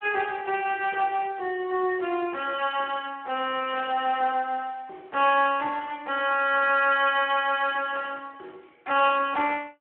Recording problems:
phone line; 300 Hz to 3.2 kHz, Speex

